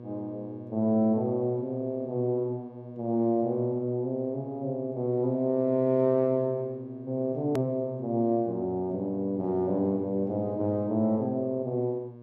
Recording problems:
hum; 60 Hz, harmonics up to 1.1 kHz, SNR 17 dB
click at an edit; at 7.5 s

